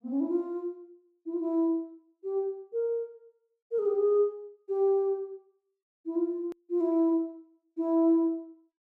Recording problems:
click at an edit; at 6.5 s

